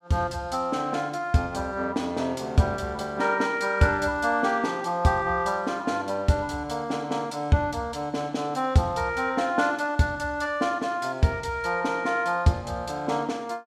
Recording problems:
none

